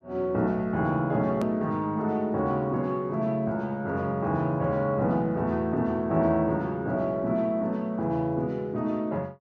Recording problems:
edit click; at 1.5 s

